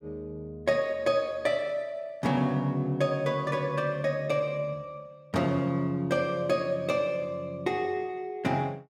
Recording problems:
none

